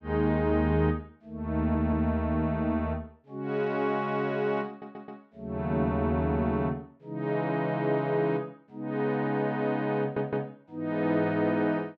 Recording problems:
audio stuttering; at 1.5 s, at 4.5 s and at 10 s

